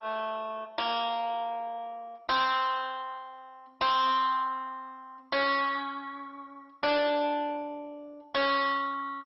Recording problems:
lossy codec; MP2, log-spectral distance 4 dB, nothing above 5.5 kHz
distortion; soft clipping, signal-to-distortion ratio 7 dB

